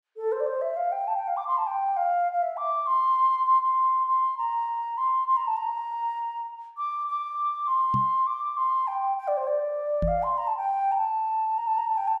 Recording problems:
microphone bump; at 8 s and at 10 s; peak +1 dB vs average level

